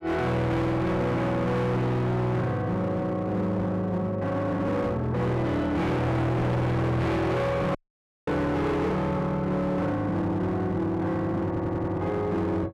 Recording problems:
distortion; hard clipping, signal-to-distortion ratio 6 dB
audio cutting out; at 8 s for 0.5 s
audio stuttering; at 11 s

